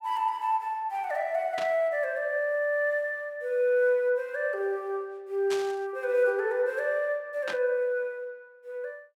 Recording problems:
burst of static; at 1.5 s, at 5.5 s and at 7.5 s; peak -4 dB vs average level

